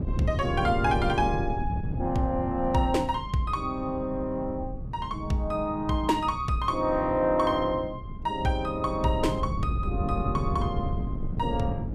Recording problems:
wind on the microphone; below 170 Hz, SNR 6 dB

